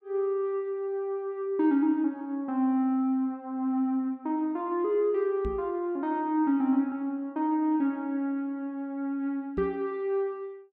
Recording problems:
microphone thump; at 5.5 s and at 9.5 s; peak -3 dB vs average level

